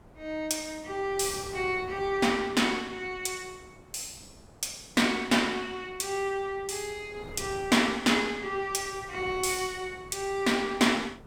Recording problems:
wind noise; below 600 Hz, SNR 20 dB

